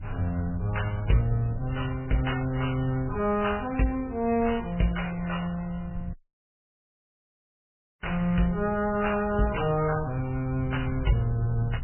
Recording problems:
codec artefacts; MP3, log-spectral distance 4 dB, nothing above 2.6 kHz
wind on the microphone; below 110 Hz, SNR 12 dB
audio cutting out; at 6 s for 2 s

